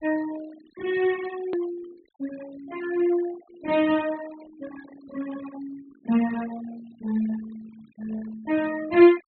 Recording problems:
treble missing; nothing above 4.3 kHz
denoising artefacts; signal-to-artefact ratio 18 dB
hard cut with a click; at 1.5 s

